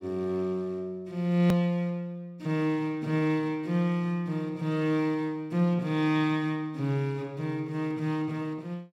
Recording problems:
click at an edit; at 1.5 s

